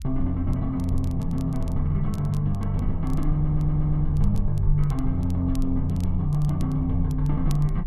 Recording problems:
low-frequency rumble; below 44 Hz, strongest tone 24 Hz, SNR 8 dB
crackle; vinyl, SNR 27 dB
stutter; at 3.5 s

